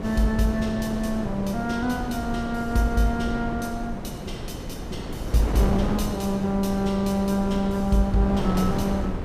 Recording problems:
wind on the microphone; below 410 Hz, SNR 6 dB

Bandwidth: 15.5 kHz